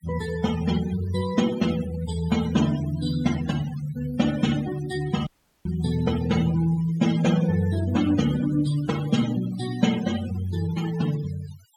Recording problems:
denoising artefacts; signal-to-artefact ratio 12 dB
dropout; at 5.5 s

